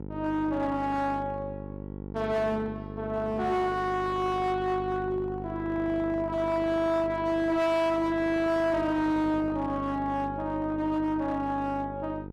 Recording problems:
distorted audio; hard clipping, signal-to-distortion ratio 12 dB
hum; 50 Hz, harmonics up to 1 kHz, SNR 11 dB

